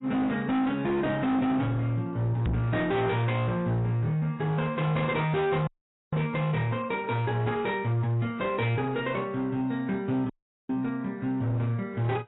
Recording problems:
lossy compression; AAC, log-spectral distance 2 dB, nothing above 3.8 kHz
distortion; hard clipping, signal-to-distortion ratio 8 dB
microphone thump; at 2.5 s; peak +3 dB vs average level
audio cutting out; at 5.5 s and at 10 s

